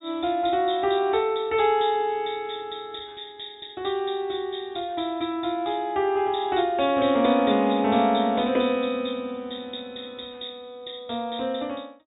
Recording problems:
treble missing; nothing above 4 kHz

